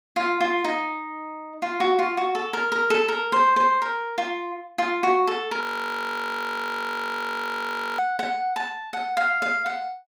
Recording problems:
frozen audio; at 5.5 s for 2.5 s

